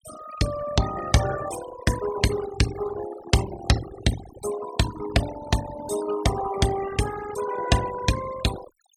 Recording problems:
noise reduction artefacts; signal-to-artefact ratio 10 dB

